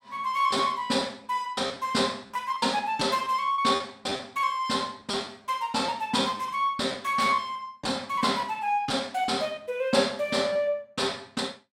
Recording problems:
packet loss; 7% of the sound replaced, filled with repeated pitch periods

